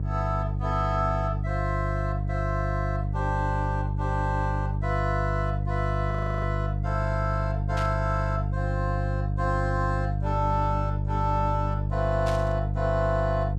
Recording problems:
hum; 50 Hz, harmonics up to 450 Hz, SNR -1 dB
audio freezing; at 6 s
static burst; at 8 s and at 12 s; peak -5 dB vs average level

